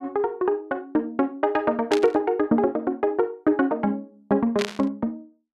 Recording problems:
static burst; at 2 s and at 4.5 s; peak 0 dB vs average level

